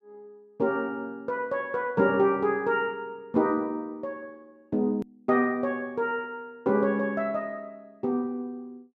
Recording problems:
hard cut with a click; at 5 s

